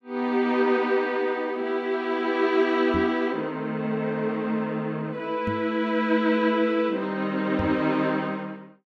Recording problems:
microphone thump; at 3 s, at 5.5 s and at 7.5 s; peak -2 dB vs average level

